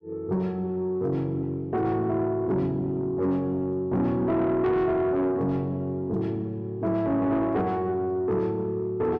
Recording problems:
distorted audio; soft clipping, signal-to-distortion ratio 12 dB

